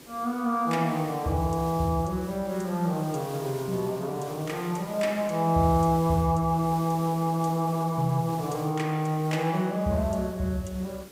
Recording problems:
hiss; SNR 17 dB

